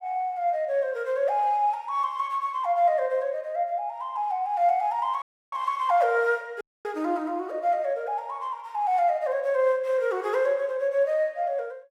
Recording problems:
dropout; at 5 s and at 6.5 s

